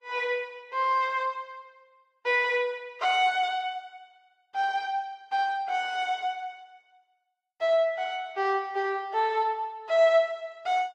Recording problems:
lossy compression; Vorbis, log-spectral distance 2 dB

